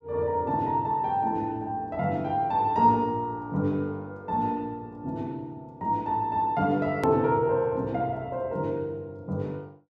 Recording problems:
click at an edit; at 7 s

